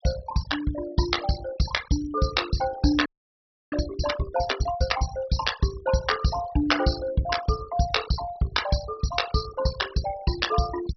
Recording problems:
low-pass filter; nothing above 5.7 kHz
denoising artefacts; signal-to-artefact ratio 12 dB
audio freezing; at 3 s for 0.5 s

